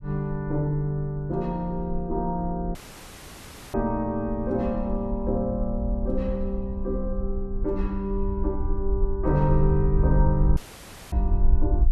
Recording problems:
rumble; below 62 Hz, SNR 3 dB
audio cutting out; at 3 s for 1 s and at 11 s for 0.5 s

